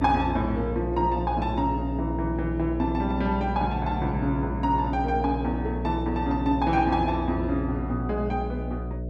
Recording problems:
hum; 60 Hz, harmonics up to 660 Hz, SNR 5 dB

